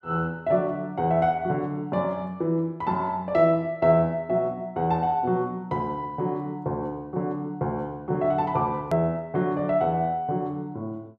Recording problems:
hard cut with a click; at 9 s

